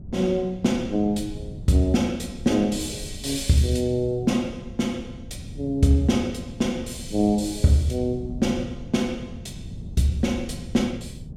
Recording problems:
wind on the microphone; below 170 Hz, SNR 14 dB

